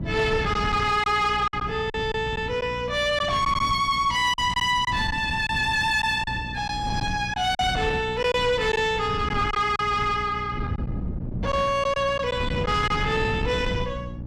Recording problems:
distortion; soft clipping, signal-to-distortion ratio 12 dB
electrical hum; 60 Hz, harmonics up to 600 Hz, SNR 15 dB
wind noise; below 220 Hz, SNR 10 dB
packet loss; 5% of the sound replaced, filled with silence

